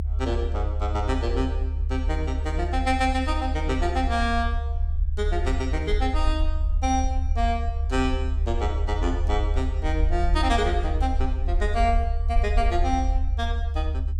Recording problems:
rumble; below 74 Hz, SNR -1 dB

